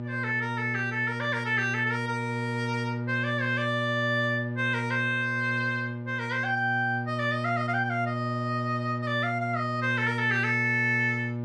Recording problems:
electrical hum; 60 Hz, harmonics up to 960 Hz, SNR 5 dB

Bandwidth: 12.5 kHz